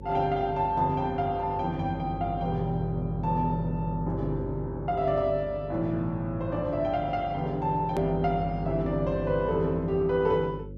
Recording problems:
hum; 50 Hz, harmonics up to 550 Hz, SNR 10 dB
click at an edit; at 8 s

